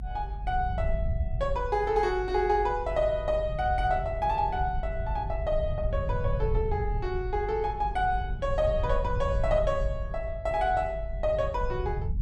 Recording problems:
rumble; below 88 Hz, SNR 5 dB

